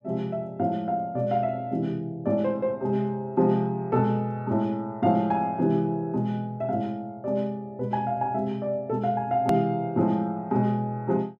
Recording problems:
click at an edit; at 9.5 s

